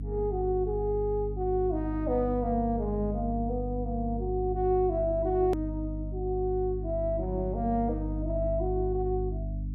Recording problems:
electrical hum; 50 Hz, harmonics up to 300 Hz, SNR 5 dB
edit click; at 5.5 s

